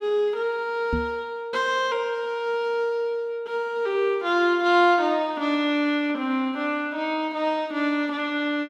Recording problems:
microphone bump; at 1 s; peak 0 dB vs average level

